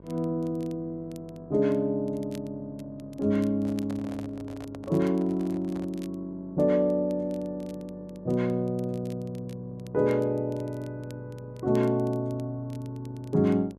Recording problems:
hum; 50 Hz, harmonics up to 1.1 kHz, SNR 22 dB
crackling; vinyl, SNR 28 dB
microphone handling noise; from 3.5 to 6 s; peak -10 dB vs average level

